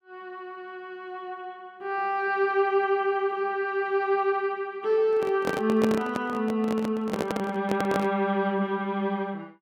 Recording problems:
microphone handling noise; from 5 to 8 s; peak +2 dB vs average level

